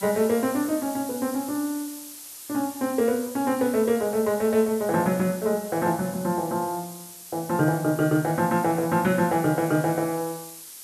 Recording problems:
hiss; SNR 14 dB

